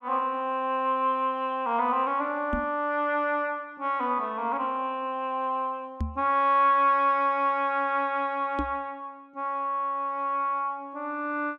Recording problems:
microphone thump; at 2.5 s, at 6 s and at 8.5 s; peak 0 dB vs average level

